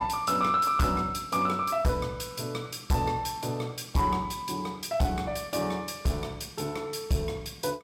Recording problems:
distorted audio; soft clipping, signal-to-distortion ratio 11 dB

